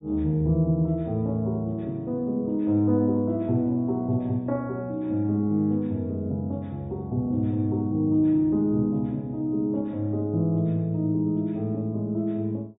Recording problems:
treble missing; nothing above 4 kHz

